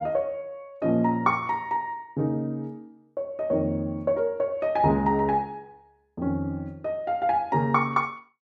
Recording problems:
none

